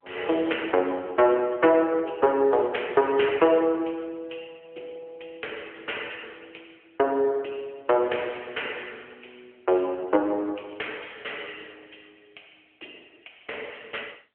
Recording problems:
telephone audio; 280 Hz to 3.3 kHz, AMR-NB

